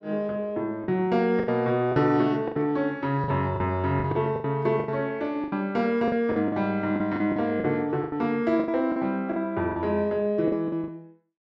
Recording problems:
lost packets; 12% of the sound replaced, filled with the last packet

